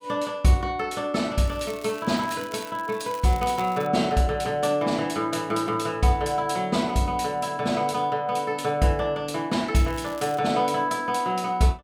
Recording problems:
crackling; from 1.5 to 4 s and at 10 s; loose cable, SNR 21 dB

